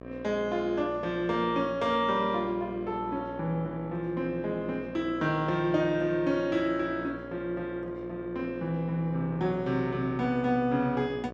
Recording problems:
hum; 60 Hz, harmonics up to 1.9 kHz, SNR 14 dB

